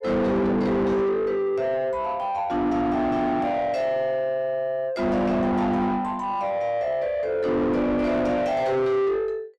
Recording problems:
distortion; soft clipping, signal-to-distortion ratio 6 dB

